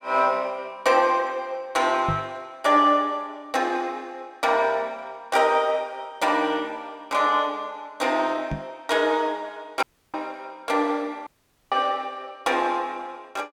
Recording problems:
microphone bump; at 2 s and at 8.5 s; peak -1 dB vs average level
dropout; at 10 s and at 11 s

